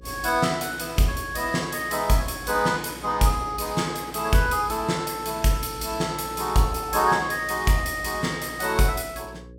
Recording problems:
hum; 60 Hz, harmonics up to 540 Hz, SNR 22 dB

